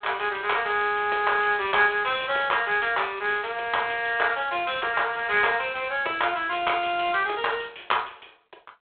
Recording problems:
telephone audio; 280 Hz to 3.5 kHz, G.726

